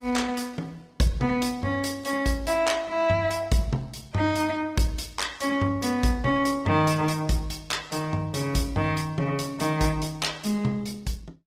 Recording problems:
lossy codec; Opus, log-spectral distance 4 dB, nothing above 18.9 kHz

